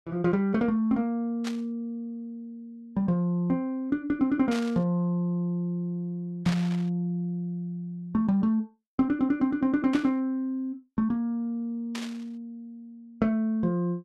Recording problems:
static burst; 5 times, first at 1.5 s; peak -4 dB vs average level

